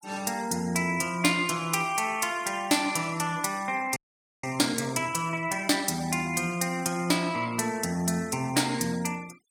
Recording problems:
noise reduction artefacts; signal-to-artefact ratio 21 dB
audio freezing; at 4 s

